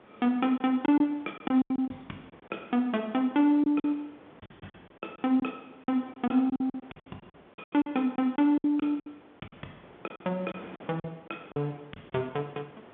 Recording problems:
telephone audio; 190 Hz to 3.9 kHz, G.711
wind on the microphone; below 1.2 kHz, SNR 24 dB
packet loss; 13% of the sound replaced, filled with silence

